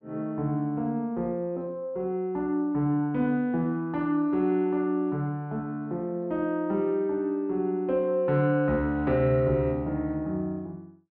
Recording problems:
none

